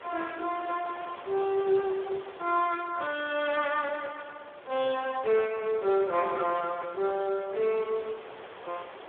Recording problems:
phone line; 340 Hz to 3.4 kHz, Speex
hiss; SNR 17 dB

